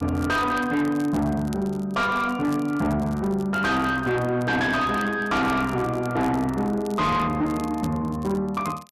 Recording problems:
distorted audio; soft clipping, signal-to-distortion ratio 7 dB
crackling; vinyl, SNR 23 dB

